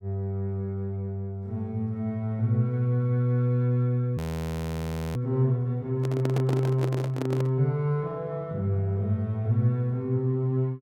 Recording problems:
frozen audio; at 4 s for 1 s
microphone handling noise; from 6 to 7.5 s; peak 0 dB vs average level

